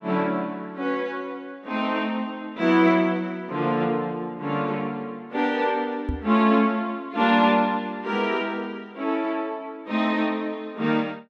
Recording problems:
knock on the microphone; at 6 s; peak 0 dB vs average level

